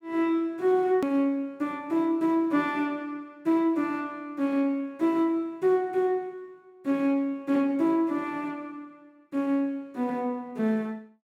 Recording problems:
click at an edit; at 1 s

